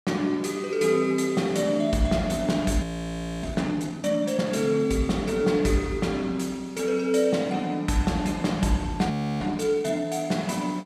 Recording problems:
frozen audio; at 3 s for 0.5 s and at 9 s

